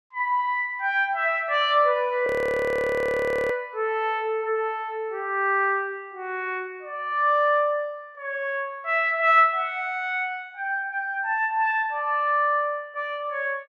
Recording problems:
audio freezing; at 2.5 s for 1 s

